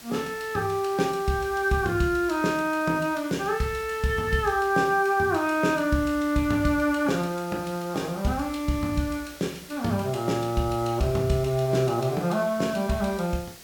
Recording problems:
hiss; SNR 19 dB

